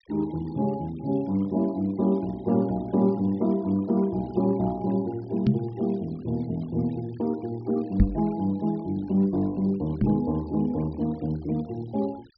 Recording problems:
treble cut off; nothing above 5.5 kHz
noise reduction artefacts; signal-to-artefact ratio 26 dB
microphone bump; at 5.5 s, at 8 s and at 10 s; peak +9 dB vs average level

